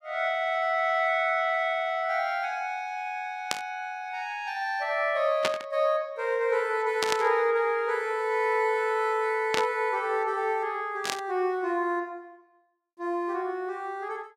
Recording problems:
static burst; 5 times, first at 3.5 s; peak +5 dB vs average level

